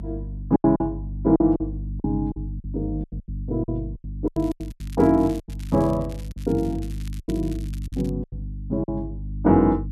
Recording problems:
hum; 50 Hz, harmonics up to 300 Hz, SNR 9 dB
packet loss; 13% of the sound replaced, filled with silence
crackle; from 4.5 to 8 s; loose cable, SNR 24 dB

